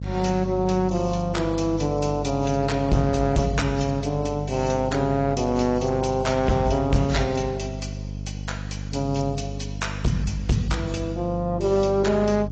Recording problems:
lossy compression; AAC, log-spectral distance 3 dB
distortion; hard clipping, signal-to-distortion ratio 10 dB
hum; 50 Hz, harmonics up to 500 Hz, SNR 9 dB

